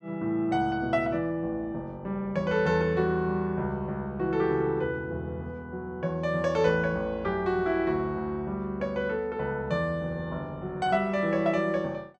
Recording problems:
none

